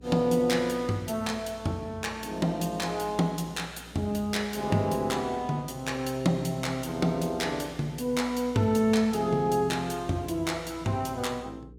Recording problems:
mains hum; 60 Hz, harmonics up to 480 Hz, SNR 22 dB

